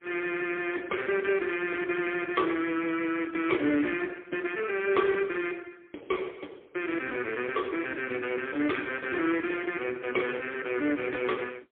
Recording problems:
phone line; 260 Hz to 3.4 kHz, AMR-NB, then MP3

